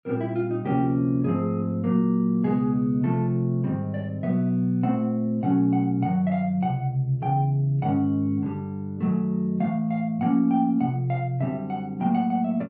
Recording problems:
none

